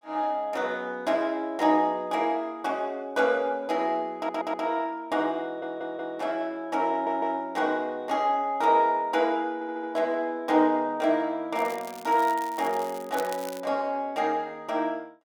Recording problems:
audio stuttering; 4 times, first at 4 s
crackling; from 12 to 14 s; loose cable, SNR 17 dB

